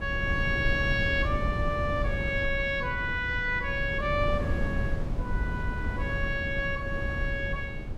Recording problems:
wind on the microphone; below 150 Hz, SNR 3 dB

